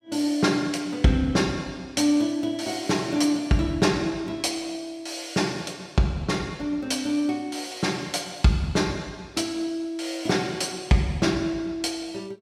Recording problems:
none

